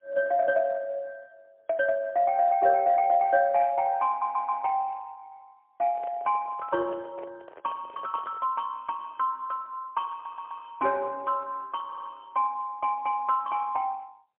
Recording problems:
phone line; 280 Hz to 3.7 kHz, AMR-NB, then MP3
audio stuttering; at 4 s, at 10 s and at 12 s
microphone handling noise; from 6 to 8.5 s; peak -12 dB vs average level

